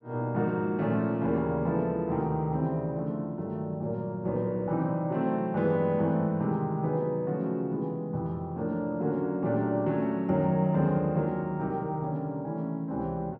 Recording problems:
none

